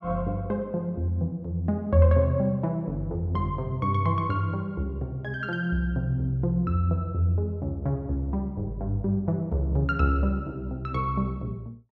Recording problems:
none

